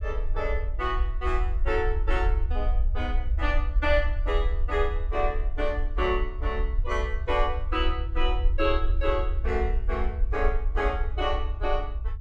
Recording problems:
low-frequency rumble; below 58 Hz, SNR 0 dB

